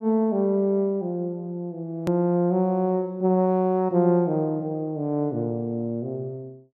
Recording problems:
click at an edit; at 2 s

